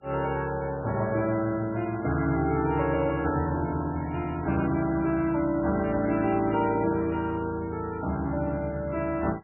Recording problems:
lossy codec; MP3, log-spectral distance 3 dB, nothing above 2.4 kHz

